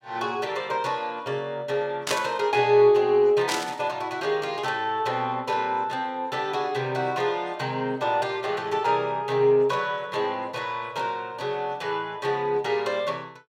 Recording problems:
static burst; at 2 s and at 3.5 s; peak +2 dB vs average level

